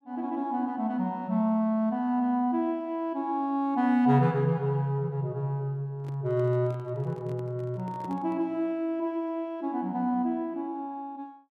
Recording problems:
microphone handling noise; from 6 to 8.5 s; peak -12 dB vs average level

